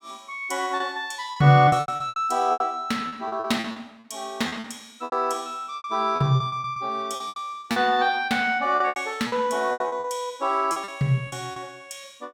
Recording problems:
packet loss; 15% of the sound replaced, filled with repeated pitch periods

